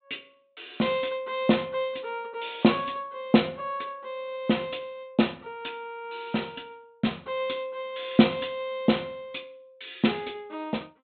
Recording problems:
treble cut off; nothing above 4 kHz

